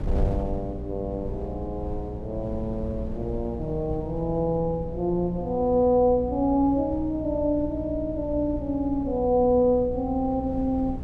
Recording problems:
hum; 60 Hz, harmonics up to 600 Hz, SNR 12 dB
wind noise; below 110 Hz, SNR 13 dB

